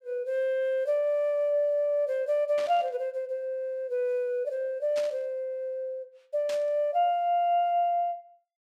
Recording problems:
static burst; at 2.5 s, at 5 s and at 6.5 s; peak -8 dB vs average level

